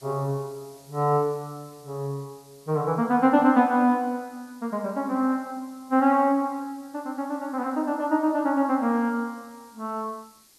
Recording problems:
hiss; SNR 28 dB

